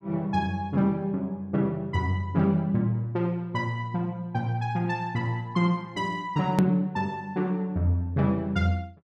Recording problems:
hard cut with a click; at 6.5 s

